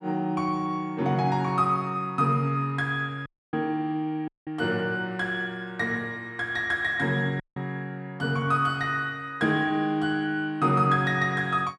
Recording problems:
audio cutting out; at 3.5 s, at 4.5 s and at 7.5 s

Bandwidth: 12.5 kHz